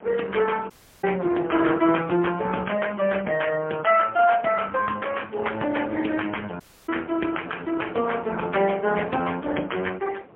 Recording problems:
telephone audio; 240 Hz to 3.2 kHz, AMR-NB, then MP3
wind noise; below 690 Hz, SNR 20 dB
audio cutting out; at 0.5 s and at 6.5 s

